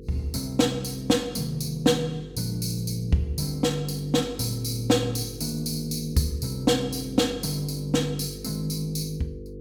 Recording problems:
hum; 50 Hz, harmonics up to 500 Hz, SNR 14 dB

